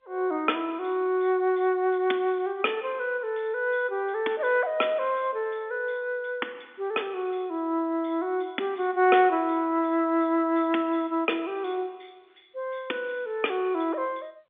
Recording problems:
phone line; 220 Hz to 3.6 kHz, G.711

